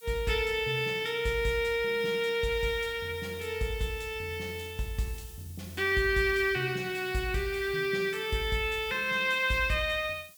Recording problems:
hiss; slope +6 dB per octave, SNR 21 dB

